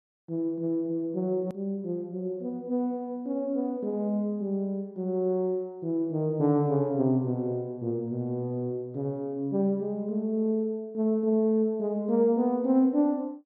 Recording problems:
click at an edit; at 1.5 s

